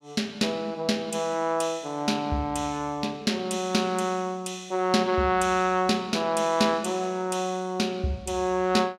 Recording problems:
none

